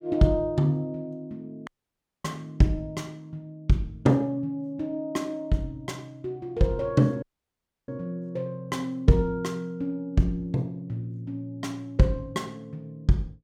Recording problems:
dropout; at 1.5 s for 0.5 s and at 7 s for 0.5 s

